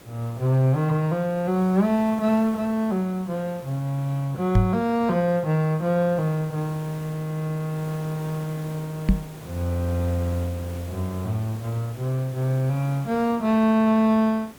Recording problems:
background hiss; slope -5 dB per octave, SNR 20 dB
microphone bump; at 4.5 s and at 9 s; peak +8 dB vs average level

